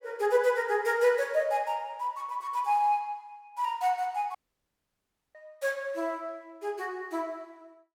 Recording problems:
dropout; at 4.5 s for 1 s

